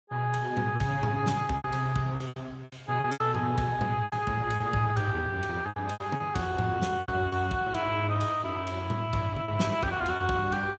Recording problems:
lossy codec; Speex, log-spectral distance 3 dB, nothing above 7.6 kHz
packet loss; 9% of the sound replaced, filled with repeated pitch periods

